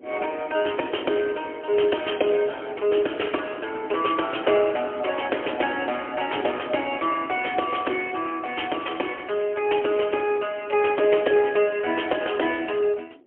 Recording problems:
telephone audio; 260 Hz to 3.3 kHz, AMR-NB, then MP3
wind on the microphone; below 400 Hz, SNR 18 dB

